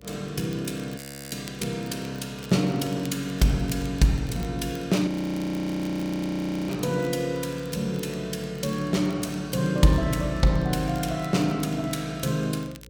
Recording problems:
electrical hum; 60 Hz, harmonics up to 540 Hz, SNR 24 dB
crackling; vinyl, SNR 23 dB
audio freezing; at 1 s and at 5 s for 1.5 s

